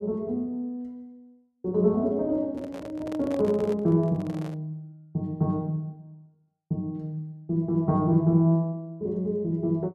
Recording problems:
handling noise; from 2.5 to 4.5 s; peak -7 dB vs average level

